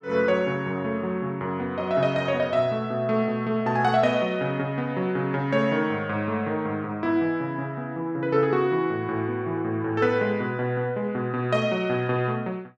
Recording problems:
none

